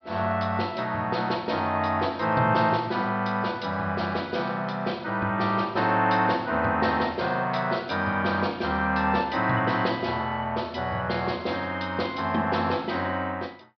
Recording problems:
treble cut off; nothing above 5.5 kHz

